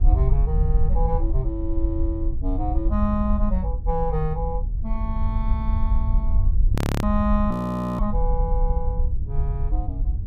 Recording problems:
wind on the microphone; below 64 Hz, SNR -3 dB
frozen audio; at 7 s and at 7.5 s

